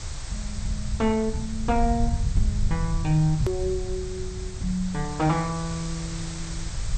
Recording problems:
lossy codec; MP2, log-spectral distance 8 dB, nothing above 13.1 kHz
hiss; SNR 12 dB
rumble; below 92 Hz, SNR 5 dB
hard cut with a click; at 3.5 s

